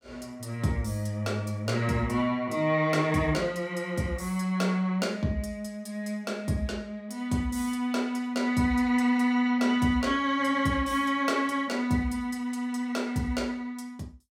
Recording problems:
none

